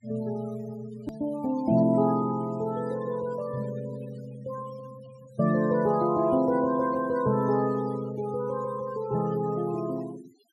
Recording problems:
noise reduction artefacts; signal-to-artefact ratio 21 dB
edit click; at 1 s

